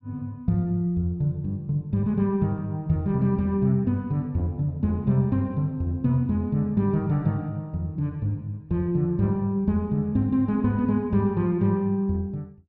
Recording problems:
none

